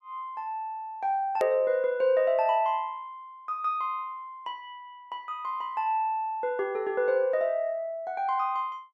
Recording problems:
click at an edit; at 1.5 s

